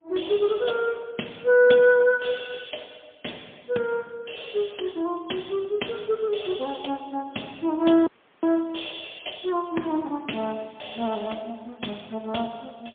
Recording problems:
phone line; 190 Hz to 3.5 kHz, AMR-NB, then MP3
audio cutting out; at 8 s

